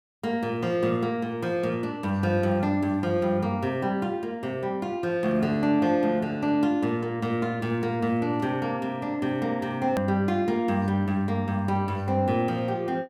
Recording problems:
click at an edit; at 10 s

